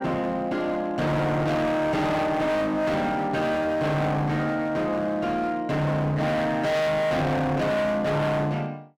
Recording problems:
distortion; hard clipping, signal-to-distortion ratio 6 dB

